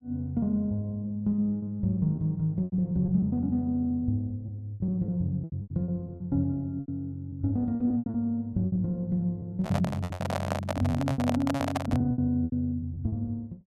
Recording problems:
lost packets; 12% of the sound replaced, filled with repeated pitch periods
handling noise; from 9.5 to 12 s; peak +4 dB vs average level

